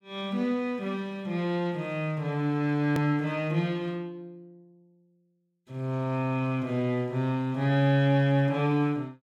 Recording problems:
click at an edit; at 3 s

